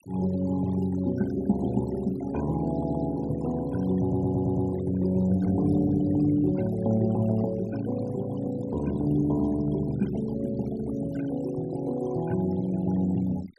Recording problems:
denoising artefacts; signal-to-artefact ratio 20 dB
stutter; at 2.5 s and at 4 s

